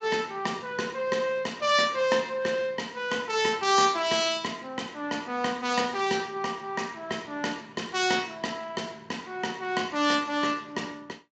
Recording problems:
lossy codec; Speex, log-spectral distance 5 dB, nothing above 7.3 kHz

